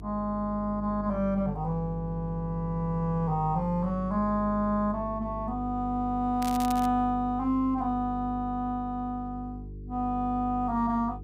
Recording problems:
electrical hum; 50 Hz, harmonics up to 450 Hz, SNR 11 dB
crackle; at 6.5 s; loose cable, SNR 13 dB

